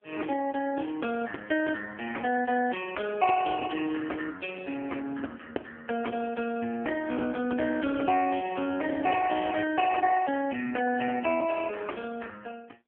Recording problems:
phone line; 220 Hz to 3.1 kHz, AMR-NB

